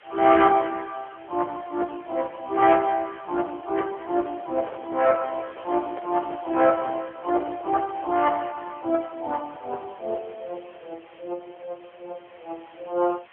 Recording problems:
phone line; 300 Hz to 2.3 kHz, AMR-NB
background hiss; SNR 27 dB
handling noise; from 4.5 to 8 s; peak -9 dB vs average level

